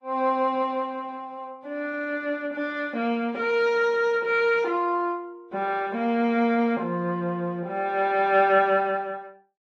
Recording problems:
lossy compression; Vorbis, then AAC, log-spectral distance 2 dB

